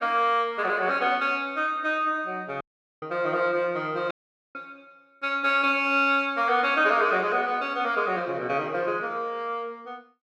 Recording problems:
audio cutting out; at 2.5 s and at 4 s

